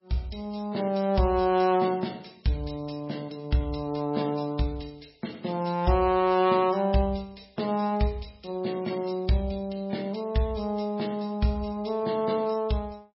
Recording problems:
lossy codec; MP3, log-spectral distance 5 dB, nothing above 5.5 kHz

